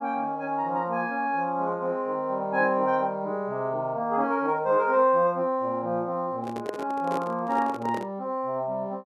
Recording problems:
handling noise; from 6.5 to 8 s; peak -3 dB vs average level

